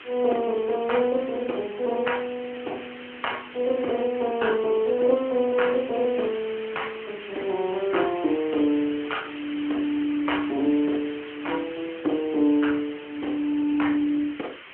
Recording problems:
telephone audio; 260 Hz to 3.2 kHz, AMR-NB
background hiss; SNR 14 dB

